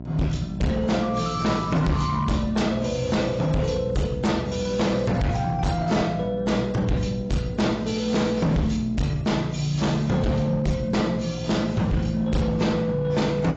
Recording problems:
codec artefacts; AAC, log-spectral distance 3 dB, nothing above 7.3 kHz
distortion; hard clipping, signal-to-distortion ratio 6 dB
electrical hum; 60 Hz, harmonics up to 1 kHz, SNR 12 dB

